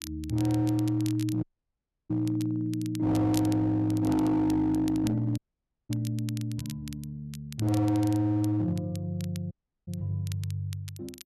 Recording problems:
distortion; hard clipping, signal-to-distortion ratio 12 dB
crackle; vinyl, SNR 18 dB
dropout; at 1.5 s for 0.5 s, at 5.5 s for 0.5 s and at 9.5 s

